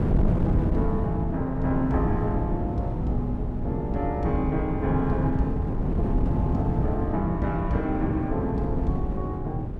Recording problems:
wind on the microphone; below 190 Hz, SNR 0 dB

